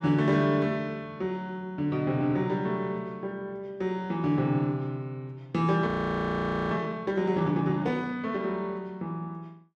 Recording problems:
audio freezing; at 6 s for 1 s

